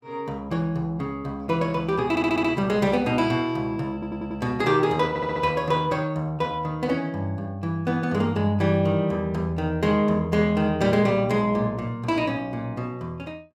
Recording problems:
audio stuttering; at 2 s, at 4 s and at 5 s

